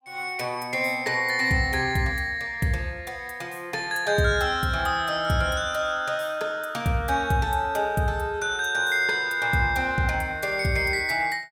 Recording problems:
none

